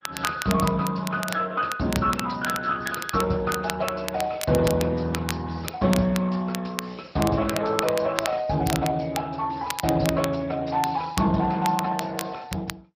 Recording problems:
lossy compression; MP2, then Speex, log-spectral distance 5 dB
crackling; vinyl, SNR 9 dB

